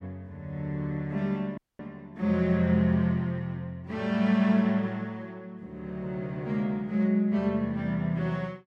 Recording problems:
dropout; at 1.5 s

